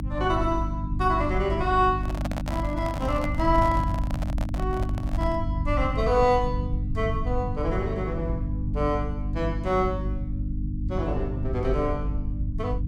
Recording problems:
electrical hum; 50 Hz, harmonics up to 300 Hz, SNR 4 dB
rumble; below 100 Hz, SNR 7 dB
handling noise; from 2 to 5.5 s; peak -2 dB vs average level

